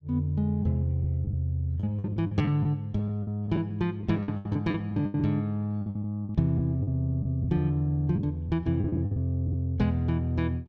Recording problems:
lost packets; 11% of the sound replaced, filled with the last packet

